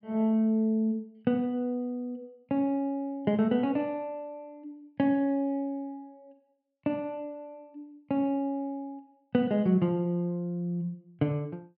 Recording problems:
treble missing; nothing above 5.5 kHz

